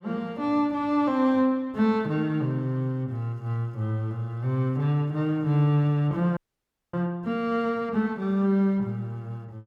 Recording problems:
audio freezing; at 6.5 s for 0.5 s

